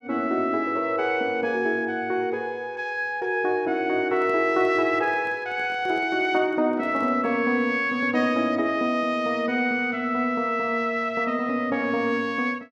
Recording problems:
handling noise; from 4 to 7.5 s; peak -13 dB vs average level

